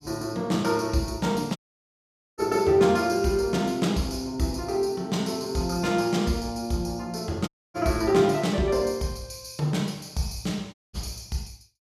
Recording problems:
dropout; at 1.5 s for 1 s, at 7.5 s and at 11 s

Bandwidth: 15 kHz